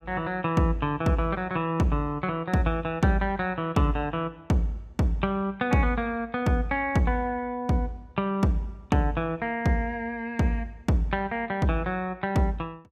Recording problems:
none

